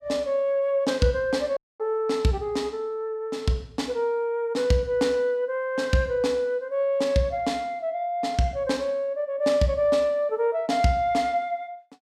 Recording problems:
audio cutting out; at 1.5 s

